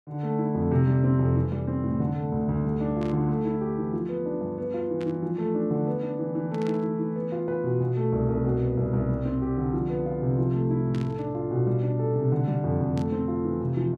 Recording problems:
static burst; 5 times, first at 3 s; peak -13 dB vs average level

